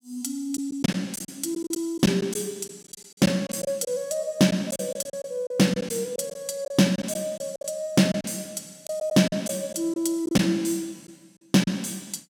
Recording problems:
lost packets; 9% of the sound replaced, filled with silence

